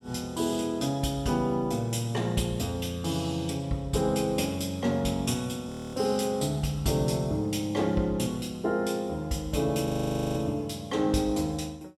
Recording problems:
audio freezing; at 5.5 s and at 10 s

